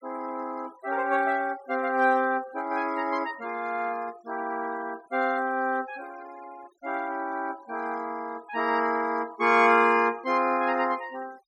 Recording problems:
denoising artefacts; signal-to-artefact ratio 23 dB

